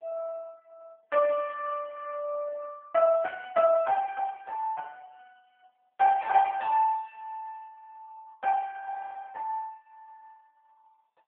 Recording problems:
phone line; 340 Hz to 2.3 kHz, AMR-NB

